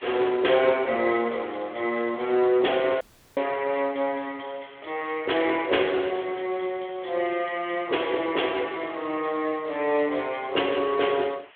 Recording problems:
phone line; 320 Hz to 3.4 kHz, Speex
background hiss; SNR 25 dB
audio cutting out; at 3 s

